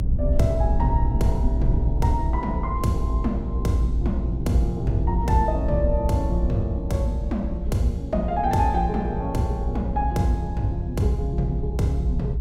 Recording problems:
rumble; below 66 Hz, strongest tone 56 Hz, SNR 1 dB

